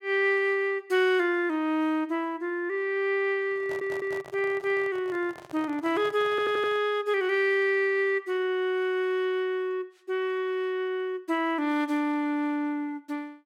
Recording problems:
microphone handling noise; from 3.5 to 7 s; peak -10 dB vs average level
stutter; at 3.5 s and at 6.5 s

